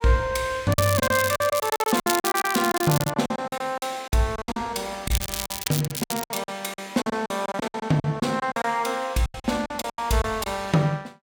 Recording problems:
lost packets; 16% of the sound replaced, filled with silence
crackling; from 0.5 to 3 s and from 5 to 6.5 s; loose cable, SNR 4 dB

